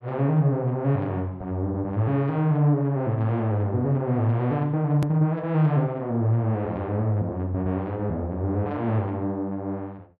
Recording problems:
click at an edit; at 5 s

